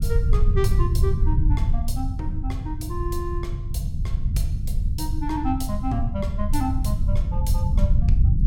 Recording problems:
rumble; below 84 Hz, SNR -6 dB

